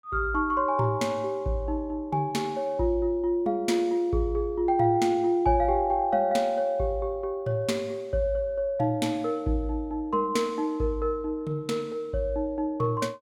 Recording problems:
none

